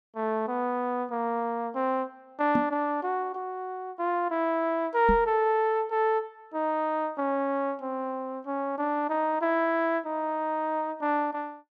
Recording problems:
microphone thump; at 2.5 s and at 5 s; peak +4 dB vs average level

